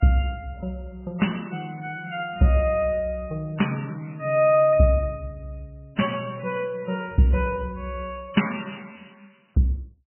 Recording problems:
codec artefacts; MP3, log-spectral distance 5 dB, nothing above 3 kHz

